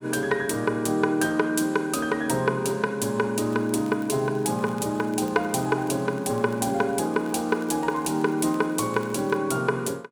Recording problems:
crackling; from 3.5 to 9.5 s; loose cable, SNR 27 dB

